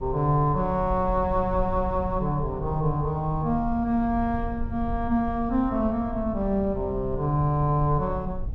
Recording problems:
low-frequency rumble; below 86 Hz, SNR 10 dB

